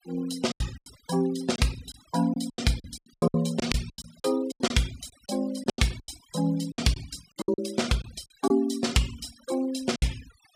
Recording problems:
denoising artefacts; signal-to-artefact ratio 17 dB
lost packets; 14% of the sound replaced, filled with silence

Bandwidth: 15.5 kHz